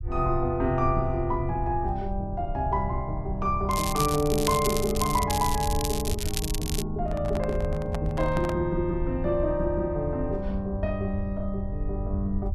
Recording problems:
low-frequency rumble; below 84 Hz, SNR 6 dB
crackle; from 3.5 to 7 s; loose cable, SNR 5 dB
handling noise; from 7 to 8.5 s; peak -2 dB vs average level

